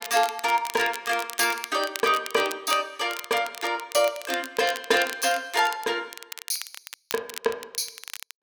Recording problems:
crackling; vinyl, SNR 12 dB

